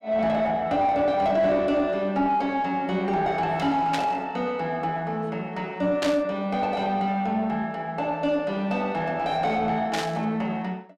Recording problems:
distorted audio; soft clipping, signal-to-distortion ratio 11 dB
static burst; at 4 s, at 6 s and at 10 s; peak -1 dB vs average level

